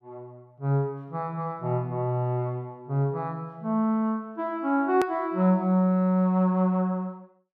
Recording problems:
hard cut with a click; at 5 s

